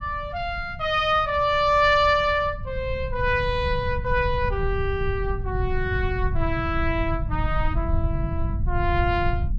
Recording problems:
low-frequency rumble; below 98 Hz, SNR 6 dB

